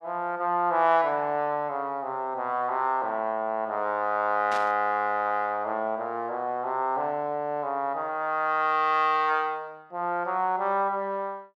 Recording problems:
burst of static; at 4.5 s; peak -8 dB vs average level

